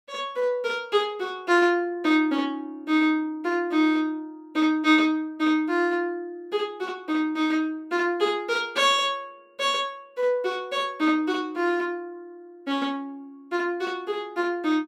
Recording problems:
none

